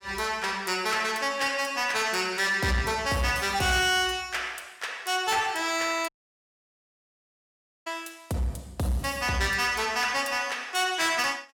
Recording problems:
distorted audio; soft clipping, signal-to-distortion ratio 11 dB
audio cutting out; at 6 s for 2 s

